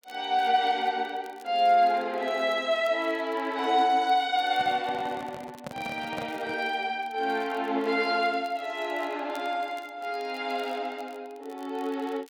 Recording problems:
crackle; vinyl, SNR 30 dB
handling noise; from 4.5 to 6.5 s; peak -6 dB vs average level

